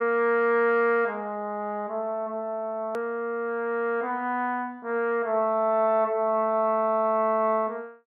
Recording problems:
hard cut with a click; at 3 s

